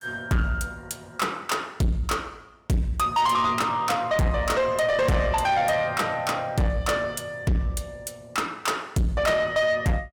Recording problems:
distortion; soft clipping, signal-to-distortion ratio 8 dB

